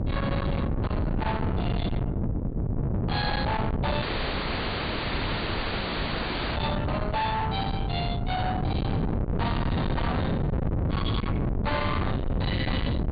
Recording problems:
low-pass filter; nothing above 4.7 kHz
distorted audio; soft clipping, signal-to-distortion ratio 7 dB
hum; 50 Hz, harmonics up to 600 Hz, SNR 18 dB
wind noise; below 590 Hz, SNR -1 dB
audio cutting out; at 4 s for 2.5 s

